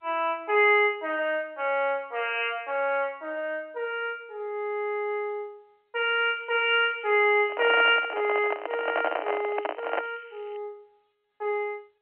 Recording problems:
telephone audio; 280 Hz to 3.2 kHz, G.711
crackle; from 6.5 to 11 s; loose cable, SNR 28 dB
microphone handling noise; from 7.5 to 10 s; peak +2 dB vs average level

